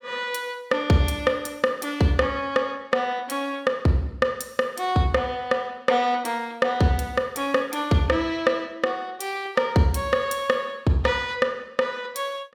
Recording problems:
none

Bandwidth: 17 kHz